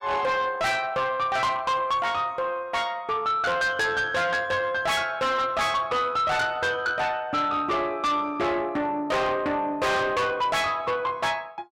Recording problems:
distortion; soft clipping, signal-to-distortion ratio 8 dB

